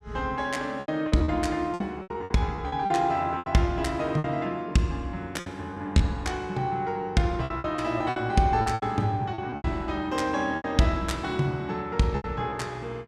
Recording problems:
packet loss; 11% of the sound replaced, filled with repeated pitch periods

